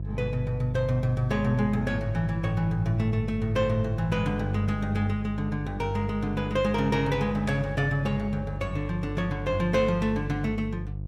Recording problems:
mains hum; 50 Hz, harmonics up to 500 Hz, SNR 7 dB

